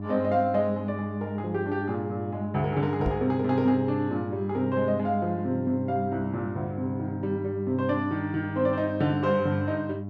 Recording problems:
mains hum; 50 Hz, harmonics up to 700 Hz, SNR 8 dB
knock on the microphone; at 3 s; peak +2 dB vs average level

